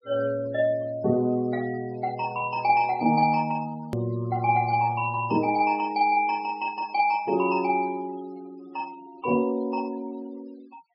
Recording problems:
low-pass filter; nothing above 5.5 kHz
denoising artefacts; signal-to-artefact ratio 25 dB
hard cut with a click; at 4 s

